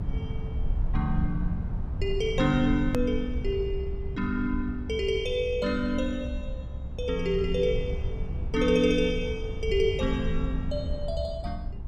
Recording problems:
low-frequency rumble; below 88 Hz, SNR 5 dB
hard cut with a click; at 3 s

